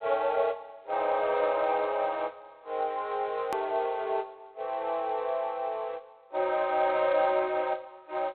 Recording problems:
telephone audio; 340 Hz to 3.9 kHz, G.726
hard cut with a click; at 3.5 s

